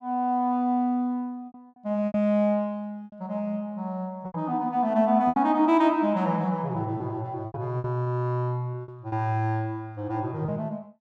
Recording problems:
lost packets; 7% of the sound replaced, filled with repeated pitch periods

